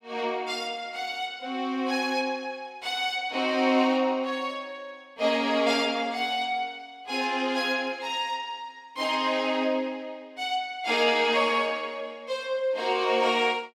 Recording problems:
none

